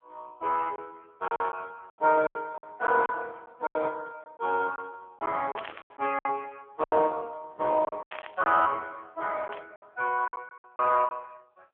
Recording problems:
telephone audio; 340 Hz to 2.9 kHz, AMR-NB
lost packets; 11% of the sound replaced, filled with silence
static burst; 4 times, first at 3 s; peak -8 dB vs average level

